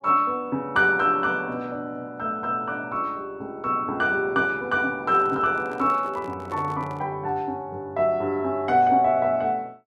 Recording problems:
microphone handling noise; from 5 to 7 s; peak -10 dB vs average level

